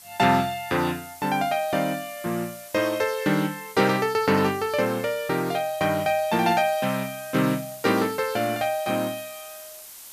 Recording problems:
background hiss; slope +1 dB per octave, SNR 17 dB

